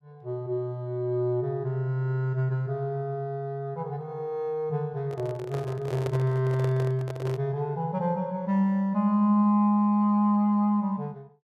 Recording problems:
handling noise; from 5 to 7.5 s; peak -3 dB vs average level

